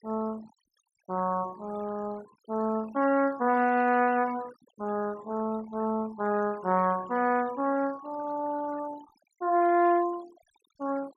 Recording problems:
noise reduction artefacts; signal-to-artefact ratio 21 dB

